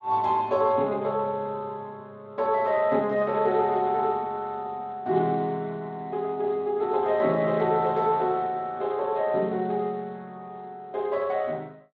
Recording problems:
lossy compression; Speex, log-spectral distance 2 dB

